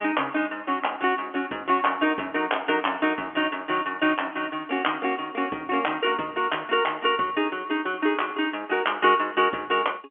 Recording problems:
telephone audio; 240 Hz to 3.3 kHz, G.711

